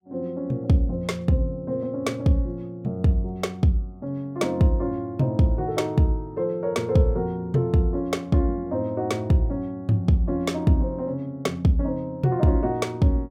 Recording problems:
none

